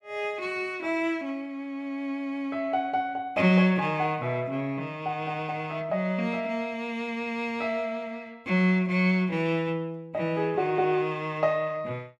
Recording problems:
none

